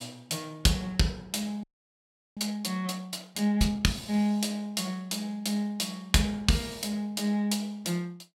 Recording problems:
audio freezing; at 1.5 s for 0.5 s

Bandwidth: 16 kHz